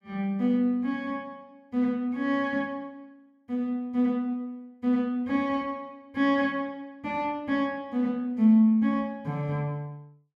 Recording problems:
none

